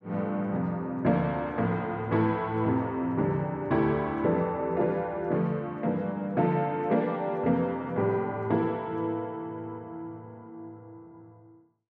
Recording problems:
none

